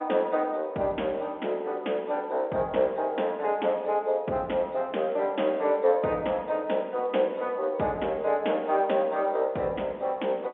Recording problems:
telephone audio; 190 Hz to 3.5 kHz, G.711

